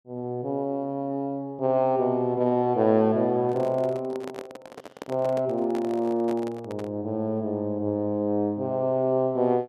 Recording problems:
handling noise; from 3.5 to 7 s; peak -7 dB vs average level

